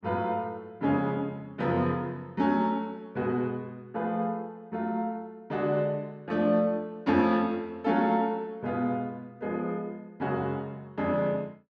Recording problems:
none

